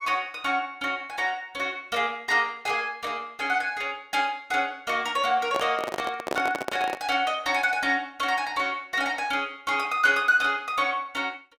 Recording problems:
handling noise; from 5.5 to 7 s; peak +1 dB vs average level

